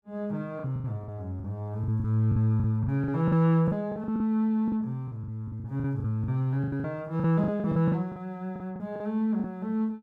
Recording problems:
packet loss; 15% of the sound replaced, filled with the last packet

